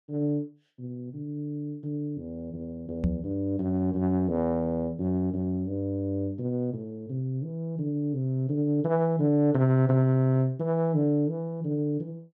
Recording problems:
microphone thump; at 3 s; peak +4 dB vs average level

